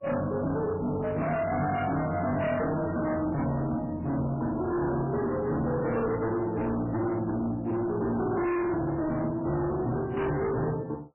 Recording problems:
lossy compression; MP3, log-spectral distance 3 dB, nothing above 2.7 kHz
distorted audio; hard clipping, signal-to-distortion ratio 7 dB

